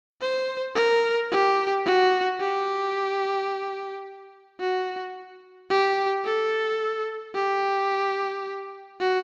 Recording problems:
none

